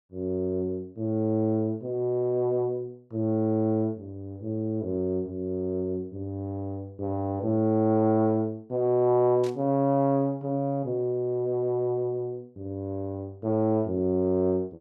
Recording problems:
static burst; at 9.5 s; peak -13 dB vs average level

